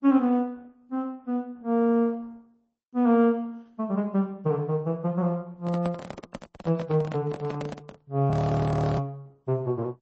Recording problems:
lossy codec; Opus, then MP3, log-spectral distance 2 dB, nothing above 8 kHz
handling noise; from 5.5 to 8 s; peak -3 dB vs average level
audio freezing; at 8.5 s for 0.5 s

